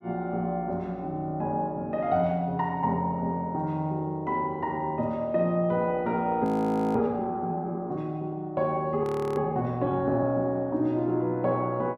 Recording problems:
audio freezing; at 6.5 s for 0.5 s and at 9 s

